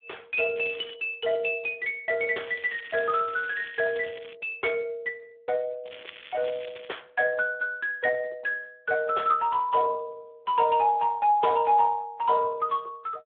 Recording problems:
telephone audio; 320 Hz to 3.5 kHz, Speex
crackle; at 0.5 s, from 2.5 to 4.5 s and from 6 to 7 s; loose cable, SNR 18 dB

